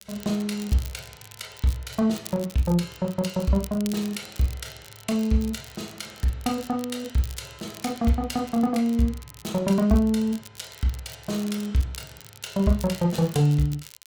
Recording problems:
crackle; vinyl, SNR 19 dB

